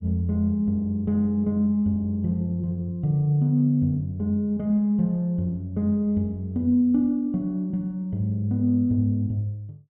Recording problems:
treble cut off; nothing above 4 kHz

